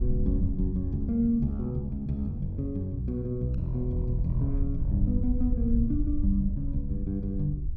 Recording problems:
wind on the microphone; below 72 Hz, SNR 4 dB

